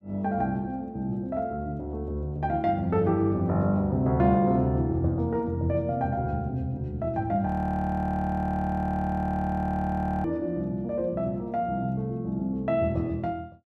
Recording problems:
audio freezing; at 7.5 s for 3 s

